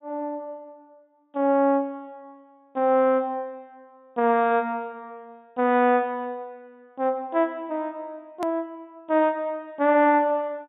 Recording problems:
treble missing; nothing above 4 kHz
hard cut with a click; at 8.5 s

